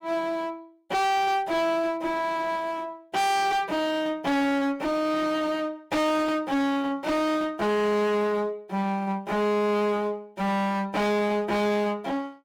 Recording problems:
distorted audio; hard clipping, uneven, signal-to-distortion ratio 6 dB

